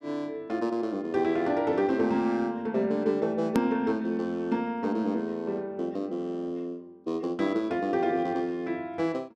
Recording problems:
click at an edit; at 3.5 s

